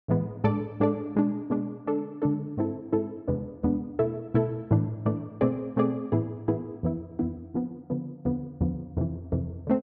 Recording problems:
none

